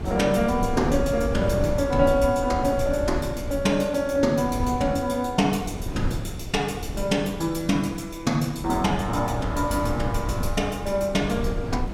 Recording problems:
wind noise; below 160 Hz, SNR 8 dB

